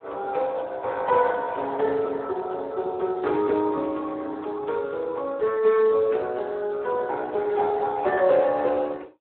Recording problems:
telephone audio; 320 Hz to 2.5 kHz, Speex

